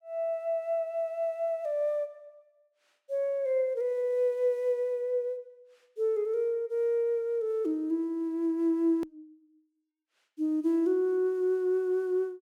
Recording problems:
hard cut with a click; at 9 s

